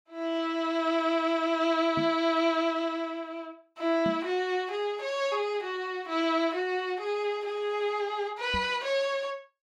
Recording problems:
microphone bump; at 2 s, at 4 s and at 8.5 s; peak -2 dB vs average level

